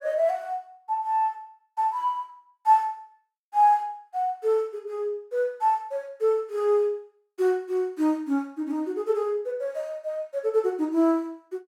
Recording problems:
none

